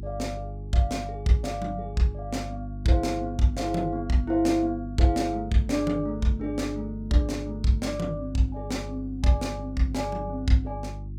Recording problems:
mains hum; 50 Hz, harmonics up to 350 Hz, SNR 10 dB

